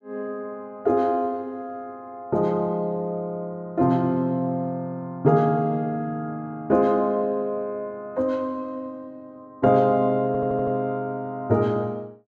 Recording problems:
stutter; at 10 s

